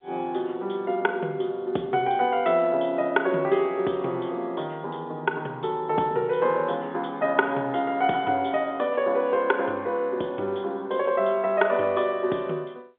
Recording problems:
phone line; 240 Hz to 3.5 kHz, G.711

